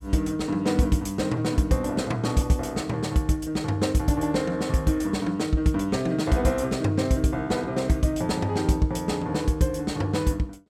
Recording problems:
none

